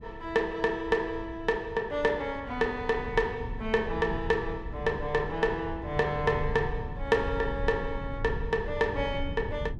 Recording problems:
rumble; below 110 Hz, SNR 10 dB

